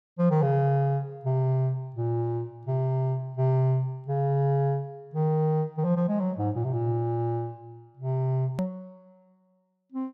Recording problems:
click at an edit; at 8.5 s

